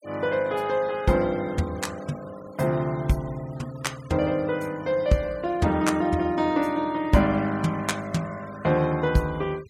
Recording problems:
denoising artefacts; signal-to-artefact ratio 23 dB

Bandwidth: 16 kHz